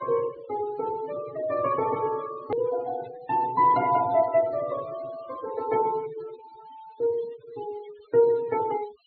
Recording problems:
low-pass filter; nothing above 4.4 kHz
noise reduction artefacts; signal-to-artefact ratio 18 dB
hard cut with a click; at 2.5 s

